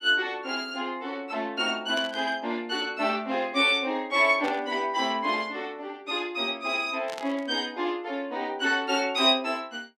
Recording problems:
static burst; at 2 s, at 4.5 s and at 7 s; peak -7 dB vs average level

